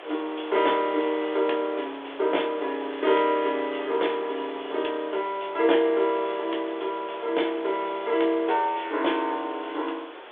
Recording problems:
telephone audio; 300 Hz to 3.6 kHz, G.726
hiss; SNR 16 dB

